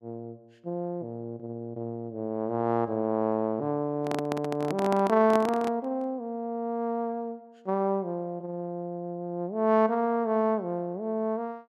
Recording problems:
microphone handling noise; from 4 to 6 s; peak -1 dB vs average level

